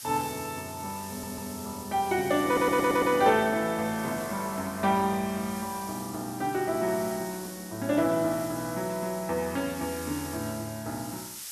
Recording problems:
background hiss; slope +3 dB per octave, SNR 13 dB
stutter; at 1 s and at 2.5 s

